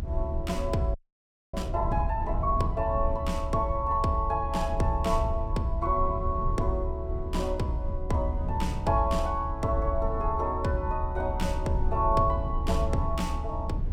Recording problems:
rumble; below 78 Hz, SNR 4 dB
audio freezing; at 1 s for 0.5 s

